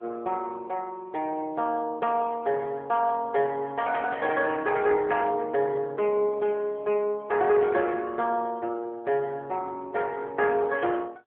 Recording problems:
phone line; 300 Hz to 3.3 kHz, AMR-NB

